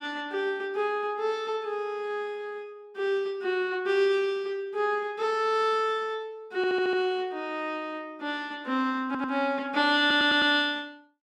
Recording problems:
audio stuttering; at 6.5 s, at 9 s and at 10 s

